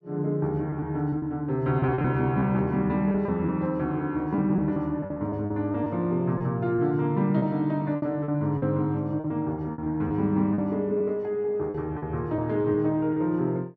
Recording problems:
lost packets; 9% of the sound replaced, filled with repeated pitch periods

